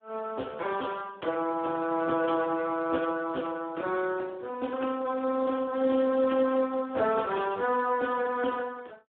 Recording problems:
phone line; 280 Hz to 2.7 kHz, Speex

